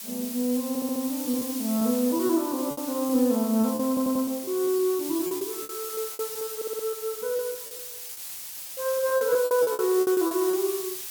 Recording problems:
hiss; slope +3 dB per octave, SNR 8 dB
lost packets; 12% of the sound replaced, filled with repeated pitch periods
stutter; at 0.5 s, at 4 s and at 6.5 s

